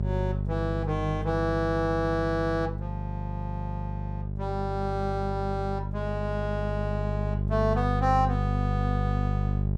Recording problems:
hum; 50 Hz, harmonics up to 600 Hz, SNR 1 dB

